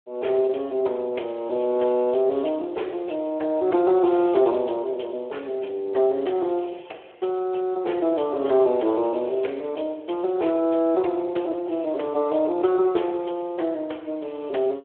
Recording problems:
telephone audio; 300 Hz to 3.4 kHz, Speex

